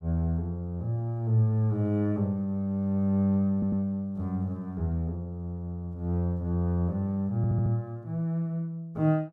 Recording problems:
audio stuttering; at 3.5 s and at 7.5 s

